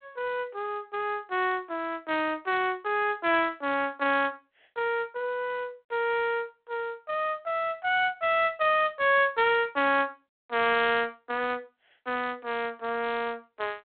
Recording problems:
telephone audio; 240 Hz to 3.7 kHz, G.726

